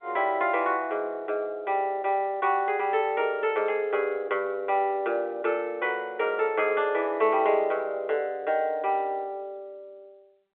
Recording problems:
phone line; 340 Hz to 3.5 kHz, G.711

